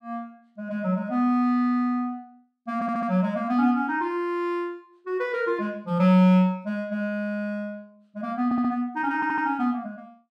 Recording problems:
stutter; at 3 s, at 8.5 s and at 9 s

